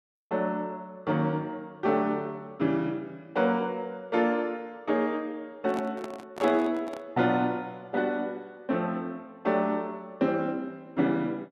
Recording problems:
handling noise; from 5.5 to 7 s; peak -4 dB vs average level

